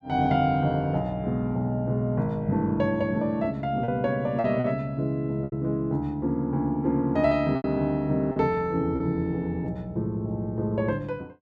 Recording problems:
packet loss; 3% of the sound replaced, filled with repeated pitch periods

